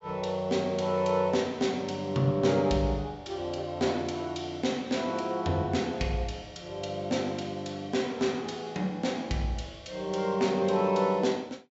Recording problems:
treble cut off; nothing above 7.6 kHz

